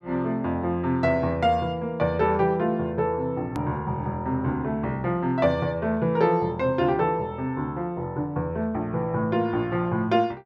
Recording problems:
edit click; at 3.5 s

